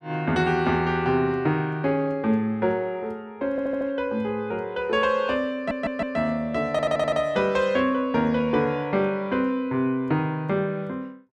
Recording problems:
audio stuttering; at 3.5 s, at 5.5 s and at 6.5 s

